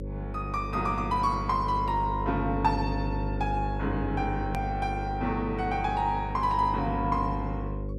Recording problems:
electrical hum; 50 Hz, harmonics up to 550 Hz, SNR 5 dB
edit click; at 4.5 s

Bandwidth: 13.5 kHz